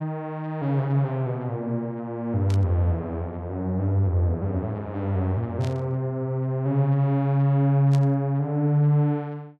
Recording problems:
static burst; at 2.5 s, at 5.5 s and at 8 s; peak -12 dB vs average level

